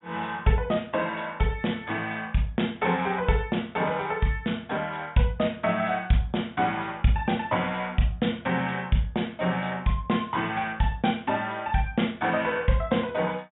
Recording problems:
low-pass filter; nothing above 3.7 kHz

